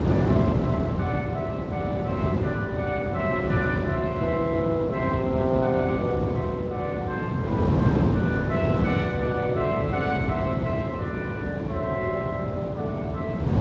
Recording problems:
lossy compression; Speex, log-spectral distance 2 dB
wind noise; below 360 Hz, SNR -2 dB

